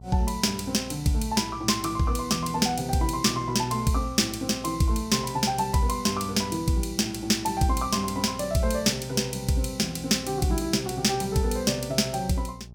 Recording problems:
electrical hum; 60 Hz, harmonics up to 660 Hz, SNR 19 dB

